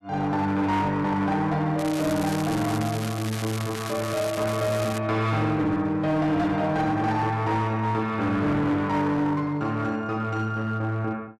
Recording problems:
distortion; hard clipping, uneven, signal-to-distortion ratio 11 dB
crackling; from 2 to 5 s; loose cable, SNR 11 dB

